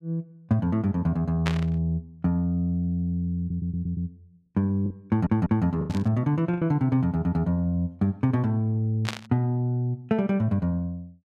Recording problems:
packet loss; 2% of the sound replaced, filled with the last packet
burst of static; at 1.5 s, at 6 s and at 9 s; peak +1 dB vs average level
stutter; at 3.5 s and at 5 s

